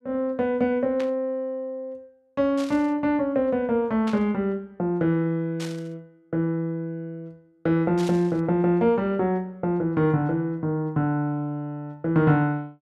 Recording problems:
static burst; 5 times, first at 1 s; peak -9 dB vs average level

